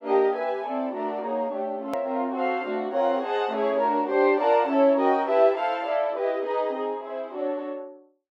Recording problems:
click at an edit; at 2 s

